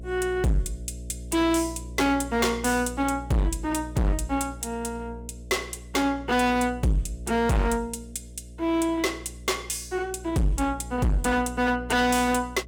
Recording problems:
distortion; hard clipping, signal-to-distortion ratio 6 dB
electrical hum; 60 Hz, harmonics up to 660 Hz, SNR 14 dB

